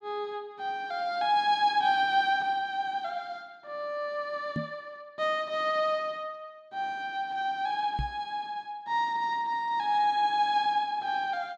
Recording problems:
microphone bump; at 4.5 s and at 8 s; peak 0 dB vs average level

